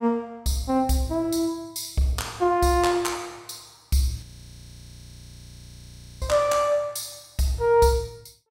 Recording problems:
audio freezing; at 4 s for 2 s

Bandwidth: 16.5 kHz